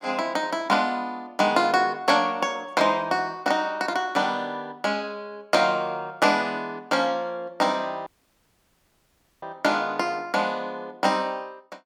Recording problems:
audio cutting out; at 8 s for 1.5 s

